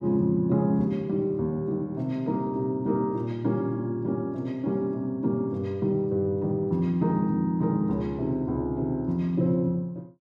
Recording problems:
none

